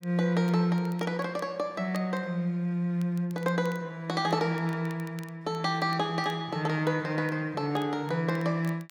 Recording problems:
crackling; vinyl, SNR 26 dB

